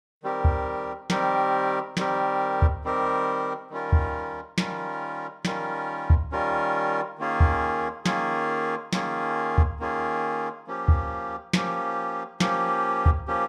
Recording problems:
none

